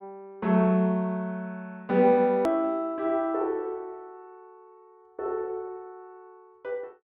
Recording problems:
click at an edit; at 2.5 s

